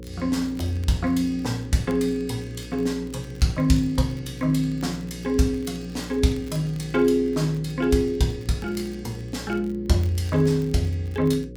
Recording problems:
hum; 60 Hz, harmonics up to 540 Hz, SNR 15 dB
crackling; vinyl, SNR 28 dB

